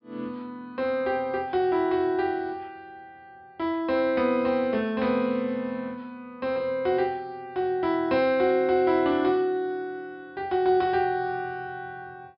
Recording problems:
treble missing; nothing above 5.5 kHz

